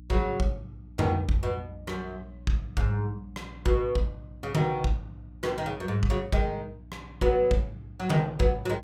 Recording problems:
electrical hum; 60 Hz, harmonics up to 300 Hz, SNR 19 dB

